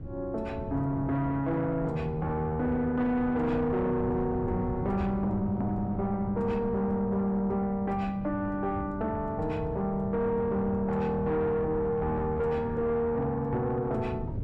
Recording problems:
distortion; soft clipping, signal-to-distortion ratio 11 dB
wind noise; below 200 Hz, SNR 10 dB

